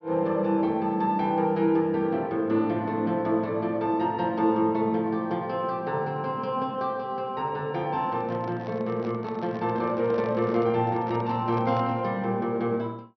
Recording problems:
treble missing; nothing above 6 kHz
microphone handling noise; from 8 to 12 s; peak -9 dB vs average level

